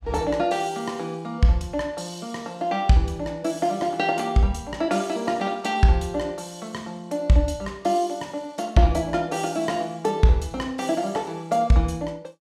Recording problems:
none

